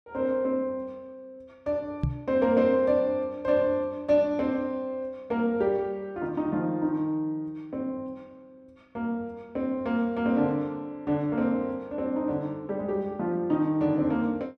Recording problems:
microphone thump; at 2 s; peak +4 dB vs average level

